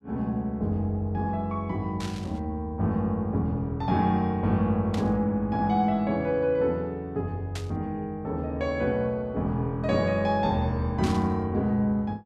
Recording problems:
static burst; 4 times, first at 2 s; peak -7 dB vs average level

